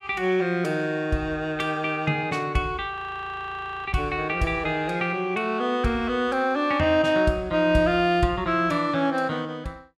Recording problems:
audio freezing; at 3 s for 1 s

